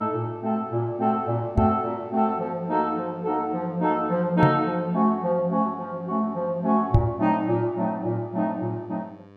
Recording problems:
hum; 50 Hz, harmonics up to 2.9 kHz, SNR 25 dB
knock on the microphone; at 1.5 s, at 4.5 s and at 7 s; peak +9 dB vs average level

